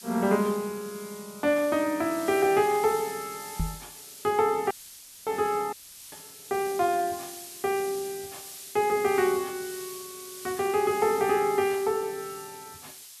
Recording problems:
hiss; slope +5 dB per octave, SNR 14 dB
microphone thump; at 3.5 s; peak 0 dB vs average level
audio cutting out; at 4.5 s for 0.5 s and at 5.5 s

